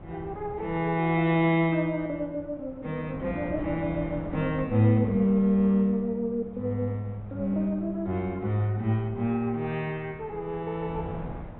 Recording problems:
treble missing; nothing above 3.9 kHz
wind on the microphone; below 430 Hz, SNR 16 dB

